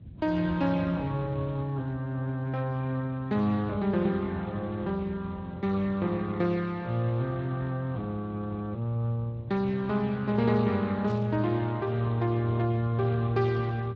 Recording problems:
codec artefacts; Speex, log-spectral distance 3 dB
low-frequency rumble; below 170 Hz, SNR 16 dB
burst of static; at 11 s; peak -16 dB vs average level

